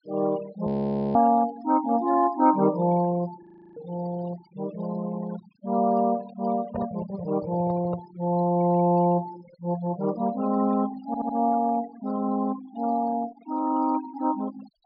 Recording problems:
low-pass filter; nothing above 5.5 kHz
noise reduction artefacts; signal-to-artefact ratio 18 dB
audio freezing; at 0.5 s and at 3.5 s
microphone handling noise; from 6.5 to 8 s; peak -4 dB vs average level
stutter; at 11 s

